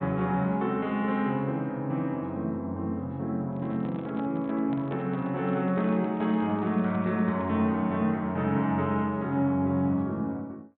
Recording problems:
treble missing; nothing above 4 kHz
microphone handling noise; from 3.5 to 7.5 s; peak -8 dB vs average level

